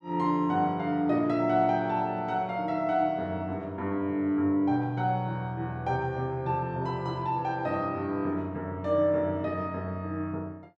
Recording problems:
none

